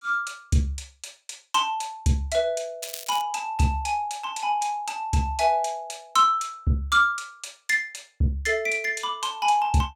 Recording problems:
crackling; at 3 s; loose cable, SNR 12 dB

